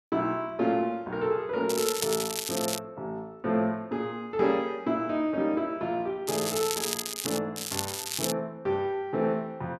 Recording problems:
crackling; from 1.5 to 3 s, from 6.5 to 7.5 s and at 7.5 s; loose cable, SNR 2 dB

